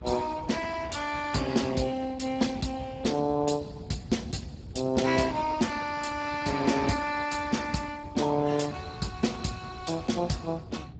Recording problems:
codec artefacts; Speex, log-spectral distance 4 dB, nothing above 7.6 kHz
low-frequency rumble; below 200 Hz, SNR 14 dB

